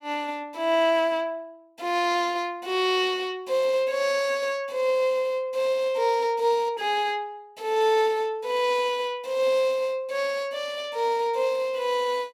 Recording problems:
none

